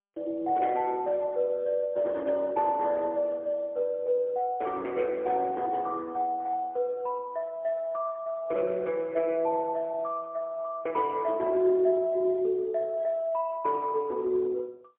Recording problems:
phone line; 260 Hz to 3.9 kHz, AMR-NB, then MP3

